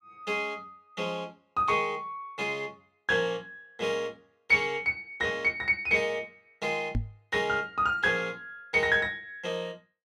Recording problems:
microphone thump; at 7 s; peak +2 dB vs average level

